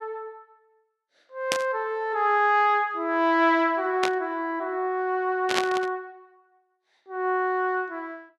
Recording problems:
static burst; at 1.5 s, at 4 s and at 5.5 s; peak +4 dB vs average level

